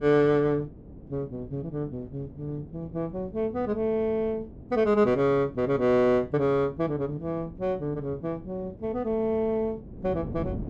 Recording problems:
wind on the microphone; below 300 Hz, SNR 17 dB

